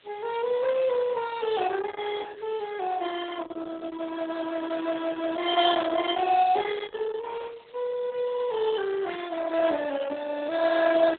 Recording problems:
codec artefacts; Speex, then Opus, log-spectral distance 10 dB
hiss; SNR 27 dB
static burst; at 9 s; peak -8 dB vs average level

